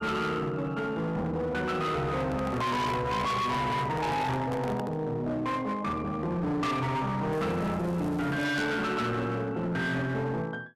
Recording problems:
distortion; hard clipping, uneven, signal-to-distortion ratio 7 dB
microphone handling noise; from 2 to 5 s; peak -1 dB vs average level
crackle; from 7.5 to 8.5 s; loose cable, SNR 26 dB

